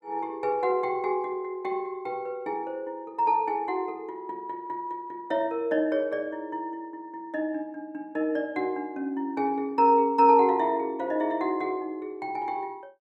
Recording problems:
none

